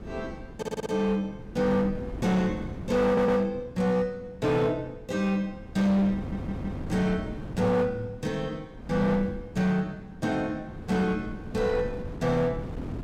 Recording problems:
distorted audio; hard clipping, signal-to-distortion ratio 11 dB
wind on the microphone; below 290 Hz, SNR 12 dB
stutter; at 0.5 s, at 3 s and at 6 s

